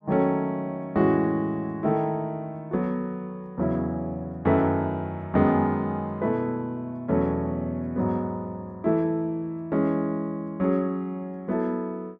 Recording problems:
none

